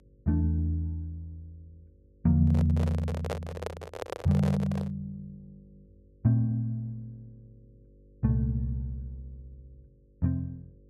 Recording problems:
mains hum; 50 Hz, harmonics up to 550 Hz, SNR 31 dB
microphone handling noise; from 2.5 to 5 s; peak -1 dB vs average level

